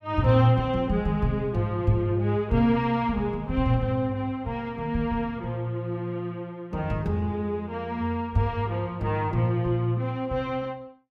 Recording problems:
none

